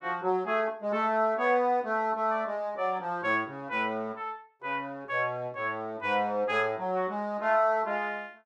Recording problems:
none

